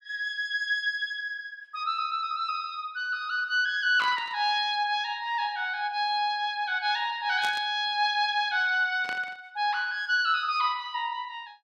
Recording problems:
static burst; at 4 s, at 7.5 s and at 9 s; peak -6 dB vs average level

